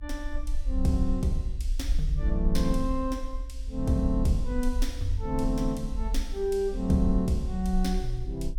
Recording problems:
rumble; below 52 Hz, SNR 4 dB

